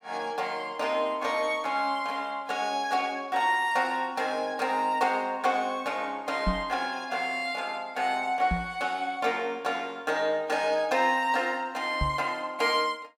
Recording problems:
microphone bump; at 6.5 s, at 8.5 s and at 12 s; peak +3 dB vs average level

